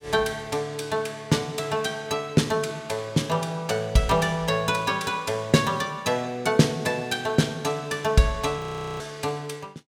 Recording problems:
frozen audio; at 8.5 s

